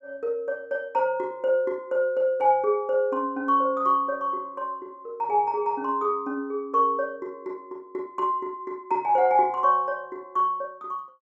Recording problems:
none

